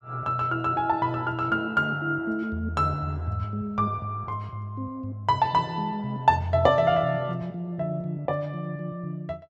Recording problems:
none

